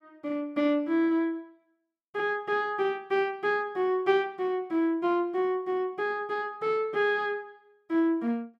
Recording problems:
none

